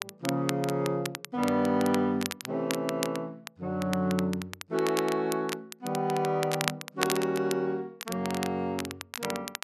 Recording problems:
crackle; vinyl, SNR 8 dB

